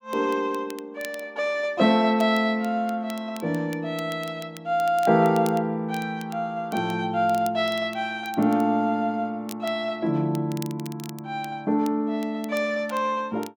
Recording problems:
crackling; vinyl, SNR 21 dB

